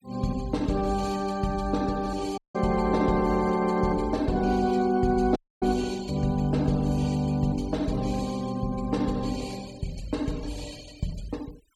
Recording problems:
noise reduction artefacts; signal-to-artefact ratio 22 dB
audio cutting out; at 2.5 s and at 5.5 s

